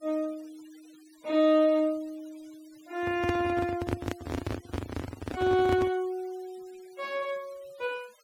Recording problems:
denoising artefacts; signal-to-artefact ratio 24 dB
microphone handling noise; from 3 to 6 s; peak +2 dB vs average level

